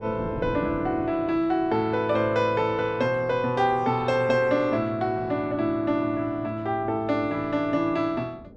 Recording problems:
wind on the microphone; below 370 Hz, SNR 18 dB

